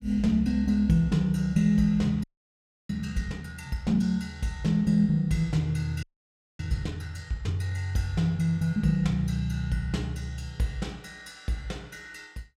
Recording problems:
audio freezing; at 2 s for 0.5 s and at 6 s for 0.5 s

